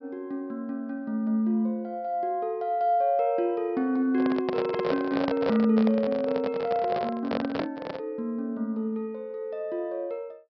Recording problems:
treble missing; nothing above 5.5 kHz
handling noise; from 4 to 8 s; peak +2 dB vs average level

